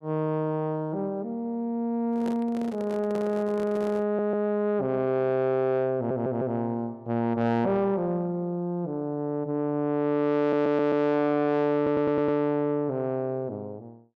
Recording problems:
distorted audio; soft clipping, signal-to-distortion ratio 11 dB
handling noise; from 2 to 4.5 s; peak -6 dB vs average level
audio stuttering; 4 times, first at 4 s

